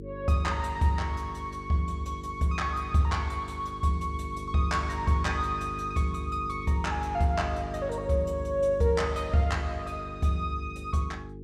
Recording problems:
mains hum; 50 Hz, harmonics up to 450 Hz, SNR 11 dB

